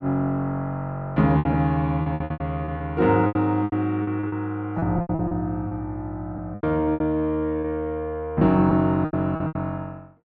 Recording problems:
packet loss; 13% of the sound replaced, filled with repeated pitch periods

